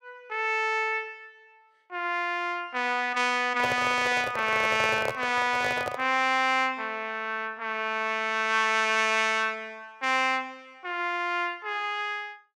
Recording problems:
microphone handling noise; from 3.5 to 6 s; peak 0 dB vs average level

